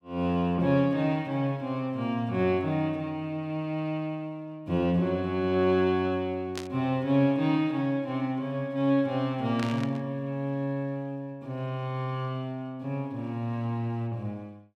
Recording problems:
burst of static; at 6.5 s and at 9.5 s; peak -3 dB vs average level

